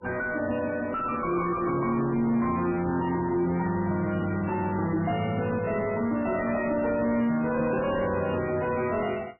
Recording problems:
lossy codec; MP3, log-spectral distance 4 dB, nothing above 2.5 kHz
distortion; soft clipping, signal-to-distortion ratio 10 dB

